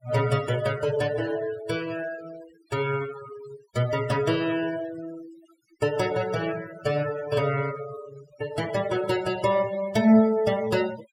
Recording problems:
denoising artefacts; signal-to-artefact ratio 16 dB

